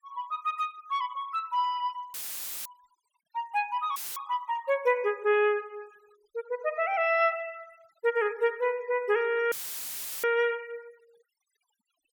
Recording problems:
noise reduction artefacts; signal-to-artefact ratio 27 dB
dropout; at 2 s for 0.5 s, at 4 s and at 9.5 s for 0.5 s; filled with static

